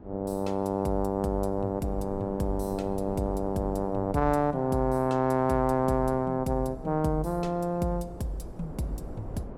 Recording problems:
wind on the microphone; below 380 Hz, SNR 15 dB

